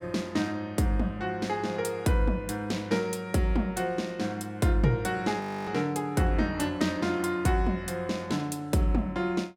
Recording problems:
frozen audio; at 5.5 s

